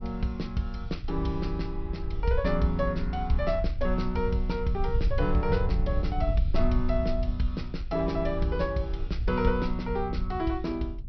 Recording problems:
low-pass filter; nothing above 5.8 kHz
wind noise; below 68 Hz, SNR 3 dB

